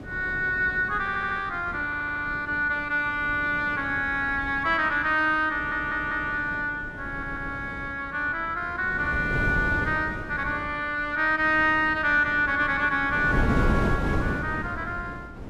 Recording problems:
wind noise; below 370 Hz, SNR 9 dB
stutter; 4 times, first at 1 s

